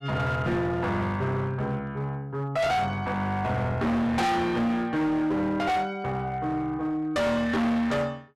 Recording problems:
distorted audio; hard clipping, uneven, signal-to-distortion ratio 6 dB

